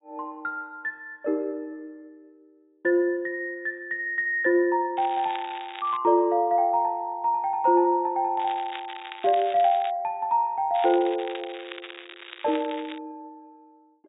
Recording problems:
treble cut off; nothing above 4 kHz
crackling; from 5 to 6 s, from 8.5 to 10 s and from 11 to 13 s; loose cable, SNR 16 dB

